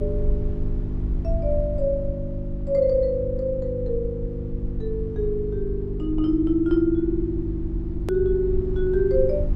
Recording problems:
hum; 50 Hz, harmonics up to 350 Hz, SNR 8 dB
rumble; below 62 Hz, SNR 8 dB
hard cut with a click; at 8 s

